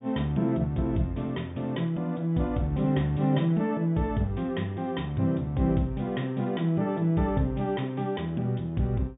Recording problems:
low-pass filter; nothing above 3.7 kHz

